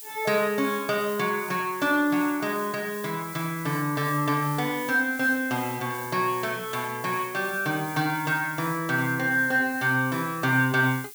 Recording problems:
hiss; slope +4 dB per octave, SNR 13 dB

